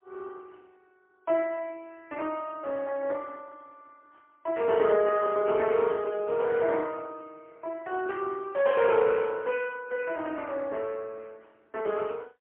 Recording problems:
phone line; 280 Hz to 3.3 kHz, AMR-NB, then MP3

